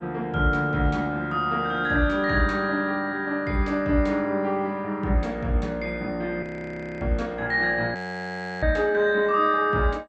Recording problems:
lossy compression; MP2, log-spectral distance 2 dB
frozen audio; at 6.5 s for 0.5 s and at 8 s for 0.5 s

